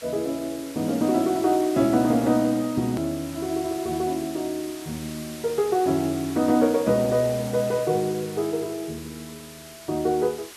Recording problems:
hiss; slope +1 dB per octave, SNR 16 dB
click at an edit; at 3 s

